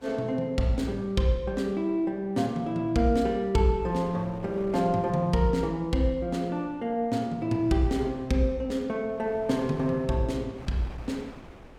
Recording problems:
wind on the microphone; below 790 Hz, SNR 21 dB

